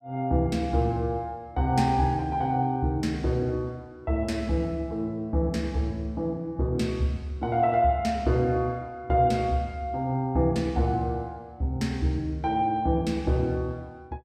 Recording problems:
none

